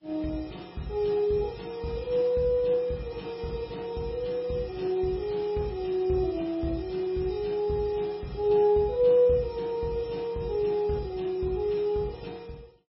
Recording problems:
codec artefacts; MP3, log-spectral distance 3 dB, nothing above 5.5 kHz

